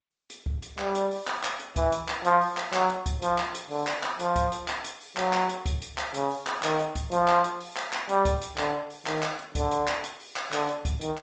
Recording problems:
lossy codec; G.722, then Opus, log-spectral distance 7 dB, nothing above 7.8 kHz

